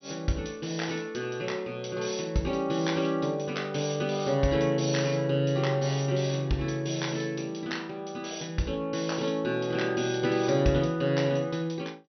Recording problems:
treble cut off; nothing above 6 kHz

